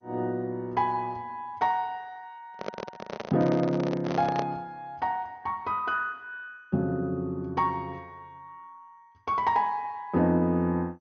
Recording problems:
lossy compression; MP2, log-spectral distance 2 dB, nothing above 6.3 kHz
microphone handling noise; from 2.5 to 4.5 s; peak +1 dB vs average level

